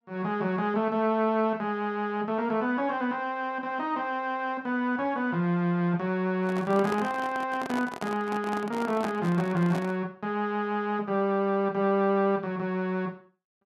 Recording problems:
microphone handling noise; from 6.5 to 10 s; peak -3 dB vs average level

